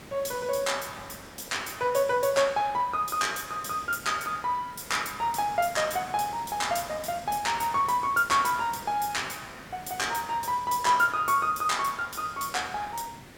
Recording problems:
background hiss; SNR 19 dB

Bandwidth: 17.5 kHz